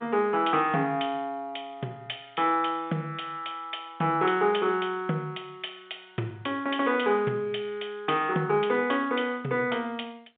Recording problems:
phone line; 260 Hz to 3.6 kHz, G.711

